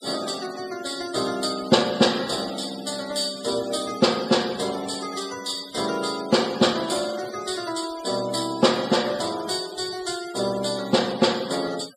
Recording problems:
noise reduction artefacts; signal-to-artefact ratio 15 dB

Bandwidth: 15 kHz